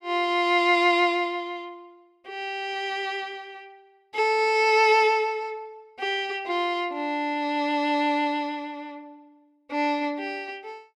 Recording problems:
none

